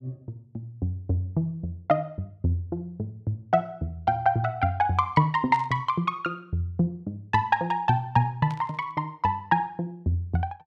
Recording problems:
burst of static; at 5.5 s and at 8.5 s; peak -13 dB vs average level

